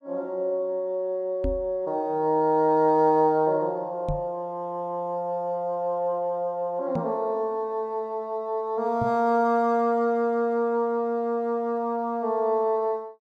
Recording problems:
knock on the microphone; 4 times, first at 1.5 s; peak -1 dB vs average level

